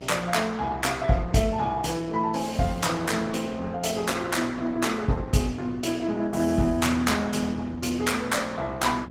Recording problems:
lossy codec; Opus, log-spectral distance 4 dB
electrical hum; 60 Hz, harmonics up to 960 Hz, SNR 18 dB

